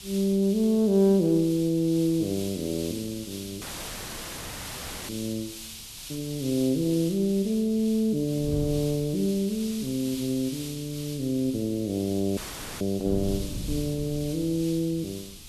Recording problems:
hiss; SNR 14 dB
wind on the microphone; below 170 Hz, SNR 18 dB
audio cutting out; at 3.5 s for 1.5 s and at 12 s; filled with static

